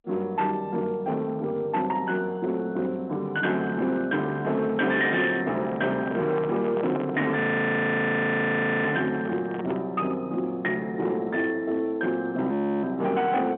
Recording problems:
telephone audio; 150 Hz to 3.5 kHz, G.711
distortion; hard clipping, signal-to-distortion ratio 12 dB
crackling; at 5 s; loose cable, SNR 18 dB
handling noise; from 5.5 to 10 s; peak -4 dB vs average level
frozen audio; at 7.5 s for 1.5 s and at 13 s

